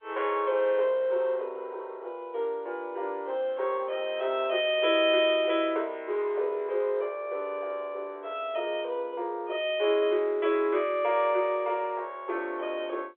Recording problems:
phone line; 300 Hz to 3.5 kHz, G.711

